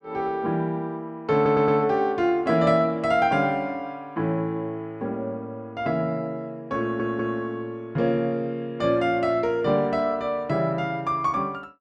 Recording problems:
stutter; at 1.5 s and at 7 s

